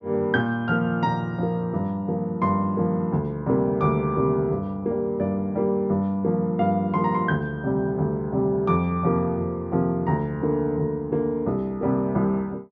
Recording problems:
treble cut off; nothing above 8 kHz

